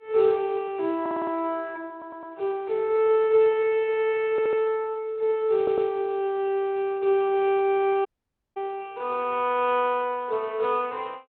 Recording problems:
phone line; 280 Hz to 3.4 kHz, Speex
audio stuttering; 4 times, first at 1 s
dropout; at 8 s for 0.5 s

